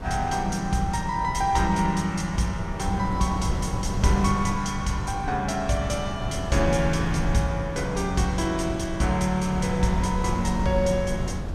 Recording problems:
wind noise; below 170 Hz, SNR 6 dB

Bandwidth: 14 kHz